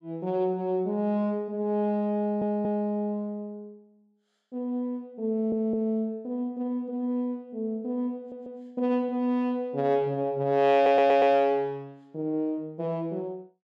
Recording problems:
audio stuttering; 4 times, first at 2 s

